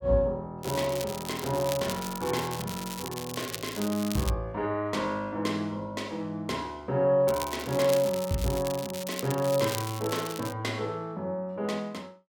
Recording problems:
crackling; from 0.5 to 4.5 s and from 7.5 to 11 s; loose cable, SNR 9 dB

